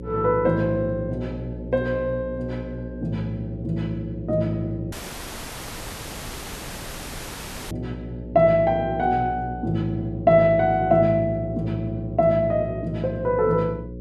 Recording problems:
electrical hum; 60 Hz, harmonics up to 540 Hz, SNR 12 dB
dropout; at 5 s for 3 s

